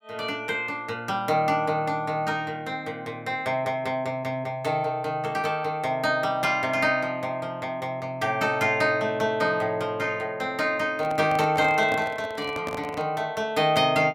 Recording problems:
handling noise; from 11 to 13 s; peak -4 dB vs average level

